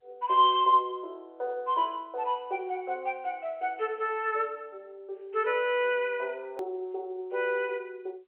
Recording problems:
phone line; 340 Hz to 3.5 kHz, G.711
click at an edit; at 6.5 s

